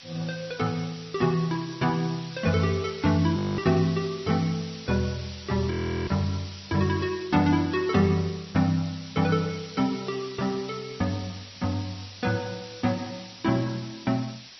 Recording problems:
lossy codec; MP2, then Vorbis, log-spectral distance 14 dB, nothing above 5.8 kHz
hiss; SNR 15 dB
frozen audio; at 3.5 s and at 5.5 s

